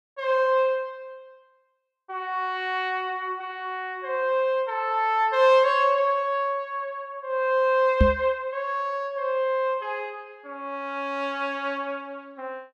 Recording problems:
microphone thump; at 8 s; peak +8 dB vs average level

